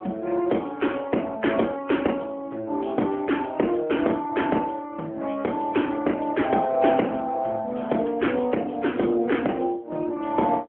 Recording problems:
phone line; 190 Hz to 3.4 kHz, AMR-NB

